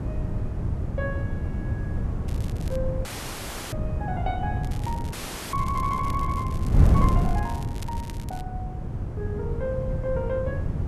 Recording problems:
wind noise; below 160 Hz, SNR -4 dB
crackle; at 2.5 s and from 4.5 to 8.5 s; loose cable, SNR 15 dB
audio cutting out; at 3 s for 0.5 s and at 5 s

